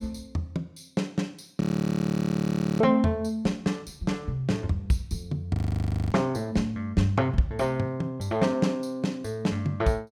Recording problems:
frozen audio; at 1.5 s for 1 s and at 5.5 s for 0.5 s

